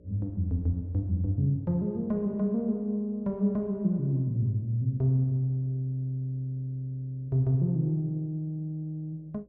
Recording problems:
hum; 60 Hz, harmonics up to 600 Hz, SNR 30 dB

